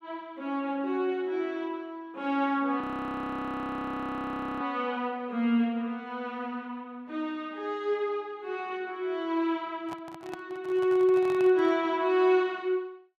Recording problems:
audio freezing; at 3 s for 2 s
microphone handling noise; from 10 to 12 s; peak -9 dB vs average level

